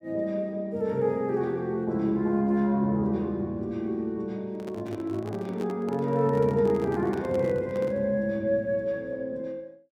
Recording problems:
microphone handling noise; from 4.5 to 8 s; peak -5 dB vs average level

